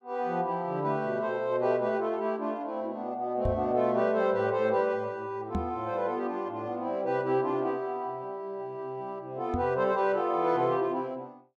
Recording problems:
microphone thump; at 3.5 s, at 5.5 s and at 9.5 s; peak +2 dB vs average level

